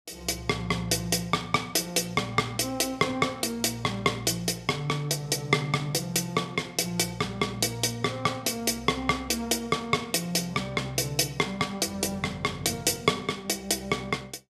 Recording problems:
none

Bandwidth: 14.5 kHz